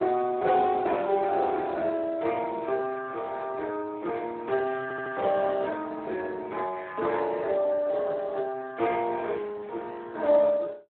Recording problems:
telephone audio; 280 Hz to 2.9 kHz, Speex
stutter; at 5 s

